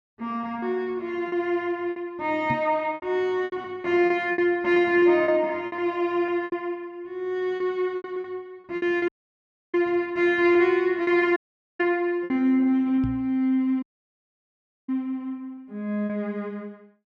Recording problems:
lost packets; 8% of the sound replaced, filled with repeated pitch periods
microphone thump; at 2.5 s and at 13 s; peak -1 dB vs average level
dropout; at 9 s for 0.5 s, at 11 s and at 14 s for 1 s

